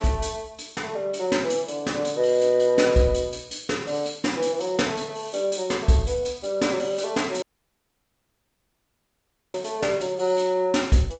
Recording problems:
lossy codec; Vorbis, then G.722, log-spectral distance 5 dB, nothing above 7.6 kHz
audio cutting out; at 7.5 s for 2 s

